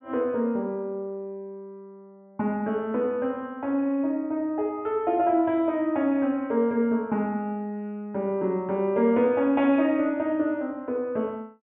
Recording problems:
treble cut off; nothing above 3.6 kHz

